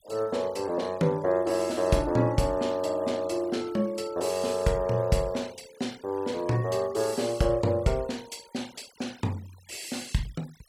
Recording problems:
noise reduction artefacts; signal-to-artefact ratio 22 dB

